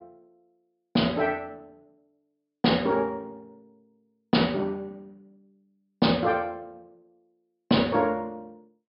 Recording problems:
treble missing; nothing above 5.5 kHz

